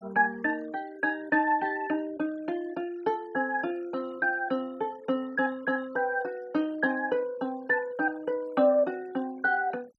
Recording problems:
denoising artefacts; signal-to-artefact ratio 25 dB

